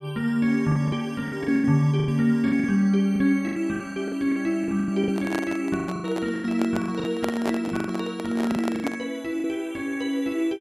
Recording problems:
packet loss; 14% of the sound replaced, filled with the last packet
microphone handling noise; from 5 to 9 s; peak +1 dB vs average level

